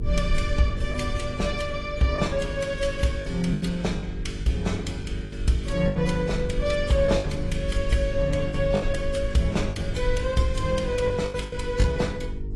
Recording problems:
lossy compression; AAC, log-spectral distance 2 dB, nothing above 11.3 kHz
electrical hum; 50 Hz, harmonics up to 450 Hz, SNR 10 dB
rumble; below 68 Hz, SNR 8 dB
lost packets; 7% of the sound replaced, filled with the last packet

